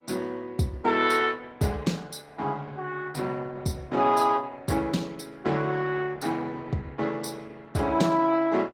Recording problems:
codec artefacts; Opus, log-spectral distance 4 dB, nothing above 16.5 kHz

